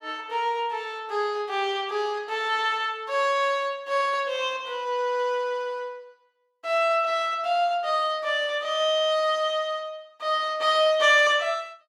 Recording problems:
none

